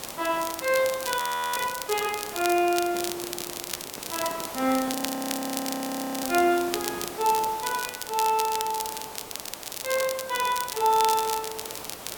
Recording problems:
background hiss; slope -4 dB per octave, SNR 11 dB
crackling; vinyl, SNR 7 dB
frozen audio; at 1 s and at 5 s for 1.5 s
handling noise; from 3 to 7.5 s; peak -11 dB vs average level

